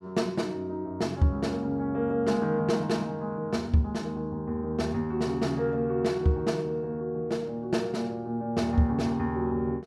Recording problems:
none

